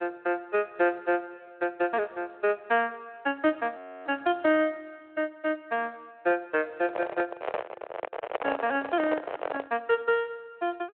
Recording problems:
phone line; 280 Hz to 3.2 kHz, Speex
audio freezing; at 4 s
microphone handling noise; from 7 to 9.5 s; peak +4 dB vs average level

